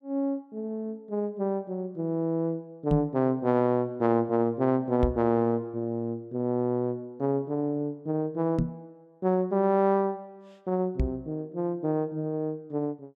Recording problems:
microphone thump; 4 times, first at 3 s; peak +5 dB vs average level

